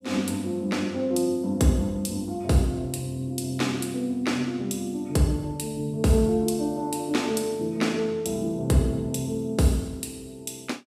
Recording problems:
none

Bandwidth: 15 kHz